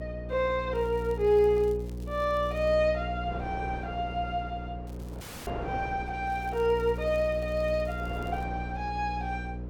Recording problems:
hum; 60 Hz, harmonics up to 540 Hz, SNR 9 dB
wind on the microphone; below 700 Hz, SNR 16 dB
crackling; from 0.5 to 3 s, at 5 s and from 6.5 to 8.5 s; loose cable, SNR 28 dB
audio cutting out; at 5 s

